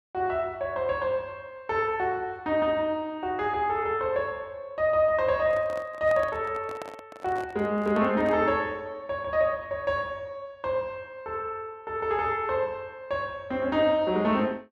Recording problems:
microphone handling noise; from 5.5 to 8.5 s; peak -7 dB vs average level

